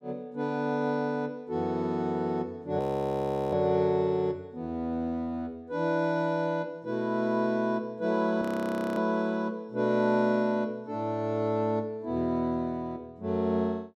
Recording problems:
frozen audio; at 3 s for 0.5 s and at 8.5 s for 0.5 s

